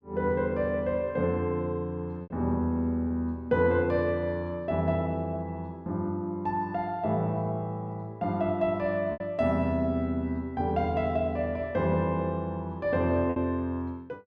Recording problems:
packet loss; 1.7% of the sound replaced, filled with repeated pitch periods

